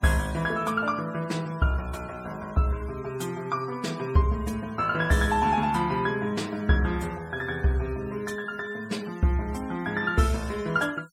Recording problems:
noise reduction artefacts; signal-to-artefact ratio 21 dB

